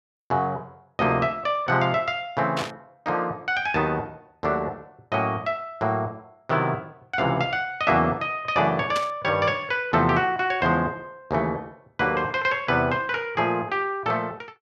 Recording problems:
burst of static; at 2.5 s and at 9 s; peak -2 dB vs average level

